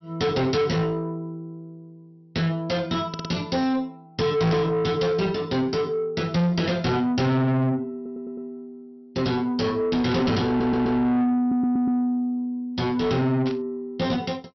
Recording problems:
treble cut off; nothing above 5.7 kHz
distortion; soft clipping, signal-to-distortion ratio 6 dB
stutter; 4 times, first at 3 s
burst of static; at 6.5 s, at 10 s and at 13 s; peak -8 dB vs average level

